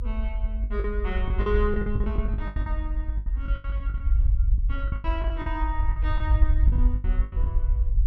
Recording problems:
low-frequency rumble; below 62 Hz, SNR -7 dB
packet loss; 17% of the sound replaced, filled with the last packet

